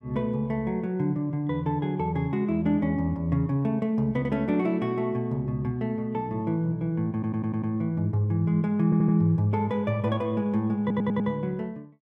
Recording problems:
audio stuttering; at 7 s, at 9 s and at 11 s

